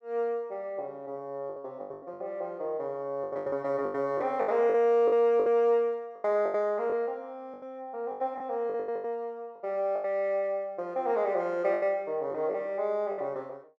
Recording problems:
packet loss; 12% of the sound replaced, filled with the last packet

